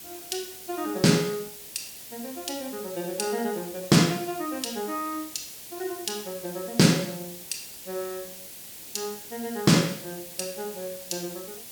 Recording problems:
background hiss; SNR 12 dB

